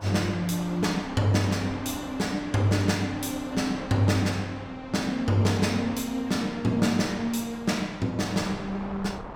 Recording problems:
wind noise; below 1 kHz, SNR 15 dB

